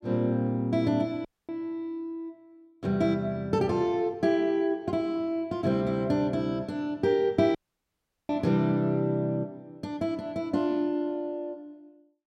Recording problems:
audio cutting out; at 1.5 s and at 7.5 s for 0.5 s

